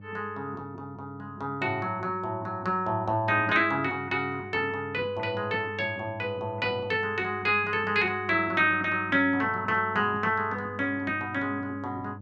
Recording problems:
hum; 50 Hz, harmonics up to 600 Hz, SNR 17 dB

